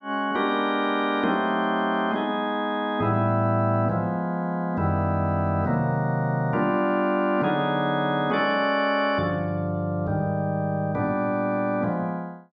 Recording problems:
none

